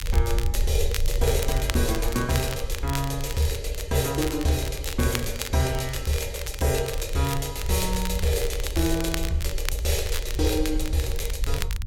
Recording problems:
rumble; below 60 Hz, SNR 6 dB
crackling; vinyl, SNR 10 dB

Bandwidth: 16.5 kHz